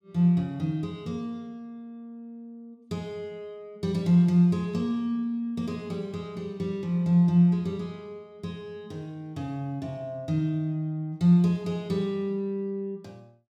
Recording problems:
none

